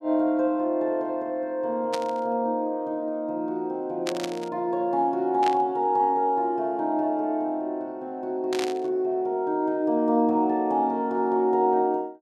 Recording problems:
burst of static; 4 times, first at 2 s; peak -1 dB vs average level

